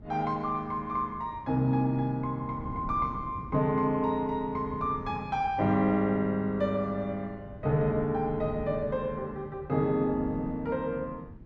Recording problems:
wind on the microphone; below 220 Hz, SNR 15 dB

